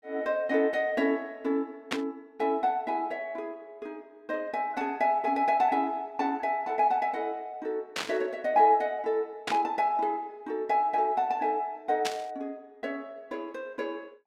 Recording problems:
burst of static; 4 times, first at 2 s; peak +2 dB vs average level

